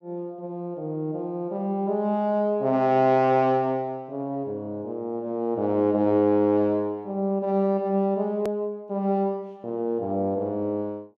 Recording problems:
edit click; at 8.5 s

